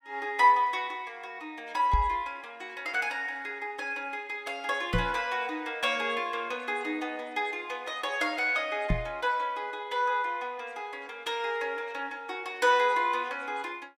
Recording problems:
knock on the microphone; at 2 s, at 5 s and at 9 s; peak +5 dB vs average level

